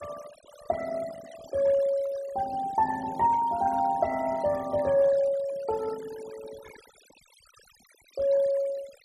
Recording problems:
denoising artefacts; signal-to-artefact ratio 19 dB

